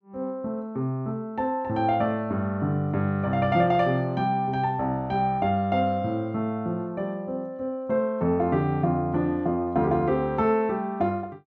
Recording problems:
none

